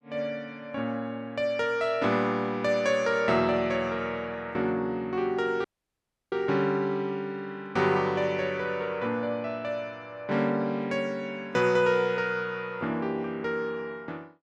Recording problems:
audio cutting out; at 5.5 s for 0.5 s

